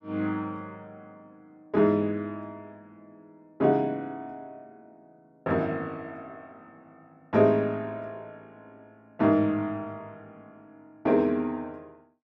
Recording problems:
none

